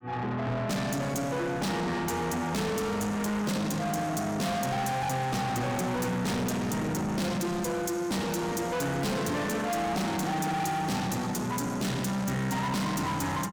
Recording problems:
distortion; soft clipping, signal-to-distortion ratio 6 dB

